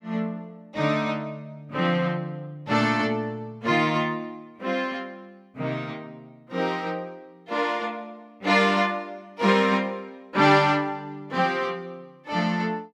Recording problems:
none

